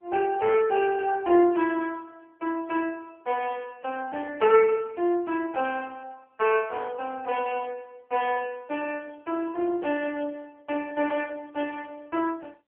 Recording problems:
telephone audio; 300 Hz to 3.2 kHz, AMR-NB

